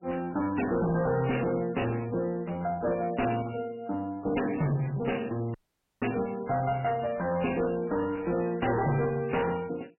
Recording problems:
lossy codec; MP3, log-spectral distance 8 dB, nothing above 2.9 kHz
distorted audio; soft clipping, signal-to-distortion ratio 7 dB
audio cutting out; at 5.5 s

